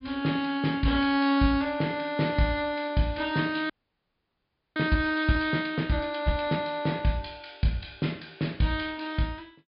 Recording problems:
low-pass filter; nothing above 5 kHz
audio freezing; at 3.5 s for 1 s

